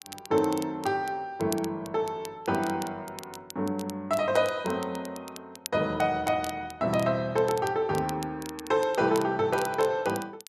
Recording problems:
crackling; vinyl, SNR 16 dB

